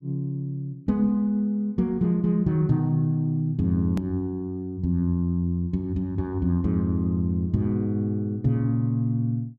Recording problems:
edit click; at 4 s

